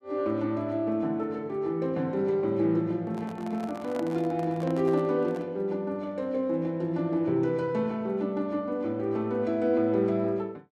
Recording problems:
microphone handling noise; from 3 to 5.5 s; peak -7 dB vs average level

